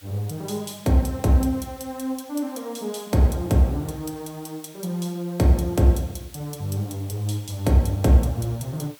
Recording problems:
background hiss; SNR 24 dB

